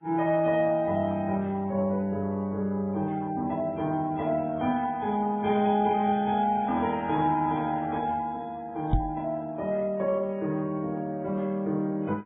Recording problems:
treble cut off; nothing above 3.2 kHz
codec artefacts; AAC, then Vorbis, log-spectral distance 2 dB
microphone bump; at 9 s; peak +6 dB vs average level

